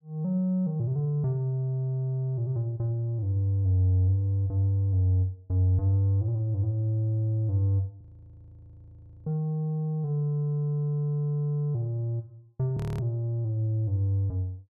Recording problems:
audio freezing; at 8 s for 1.5 s and at 13 s

